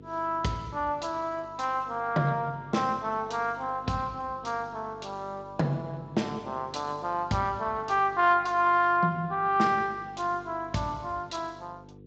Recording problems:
lossy compression; Speex, log-spectral distance 3 dB
mains hum; 50 Hz, harmonics up to 500 Hz, SNR 20 dB

